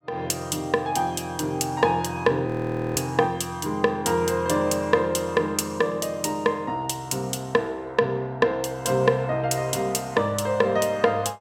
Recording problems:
frozen audio; at 2.5 s

